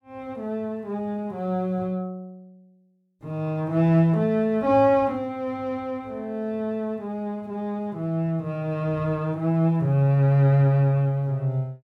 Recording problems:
none

